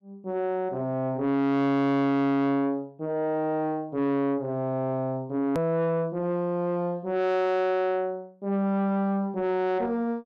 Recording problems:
distortion; soft clipping, signal-to-distortion ratio 8 dB
edit click; at 5.5 s

